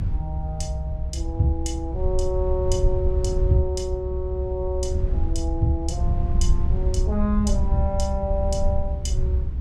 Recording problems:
rumble; below 74 Hz, SNR -1 dB

